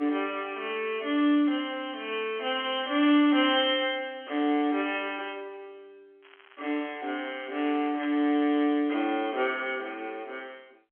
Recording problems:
phone line; 240 Hz to 3.3 kHz, G.711
crackling; from 6 to 8.5 s; loose cable, SNR 24 dB

